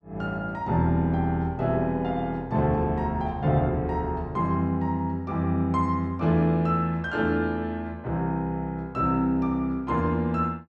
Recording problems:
none

